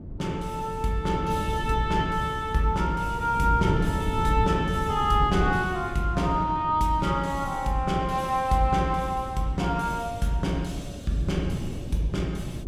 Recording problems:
wind noise; below 210 Hz, SNR 8 dB

